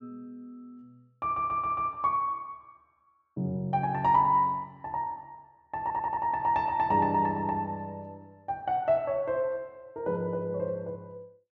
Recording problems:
audio stuttering; at 1 s and at 6 s

